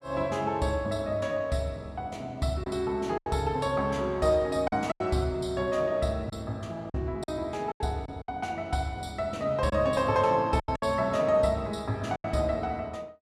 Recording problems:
packet loss; 5% of the sound replaced, filled with silence

